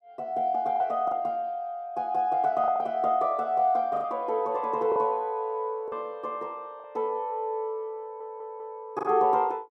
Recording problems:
lost packets; 5% of the sound replaced, filled with the last packet
audio stuttering; at 8 s

